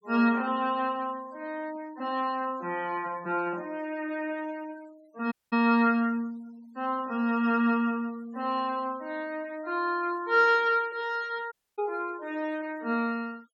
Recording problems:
noise reduction artefacts; signal-to-artefact ratio 24 dB
dropout; at 5.5 s and at 12 s

